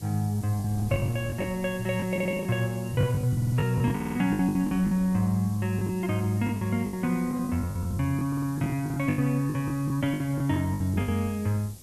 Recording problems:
background hiss; slope +8 dB per octave, SNR 20 dB
wind on the microphone; below 240 Hz, SNR 21 dB
packet loss; 14% of the sound replaced, filled with the last packet
stutter; 4 times, first at 2 s

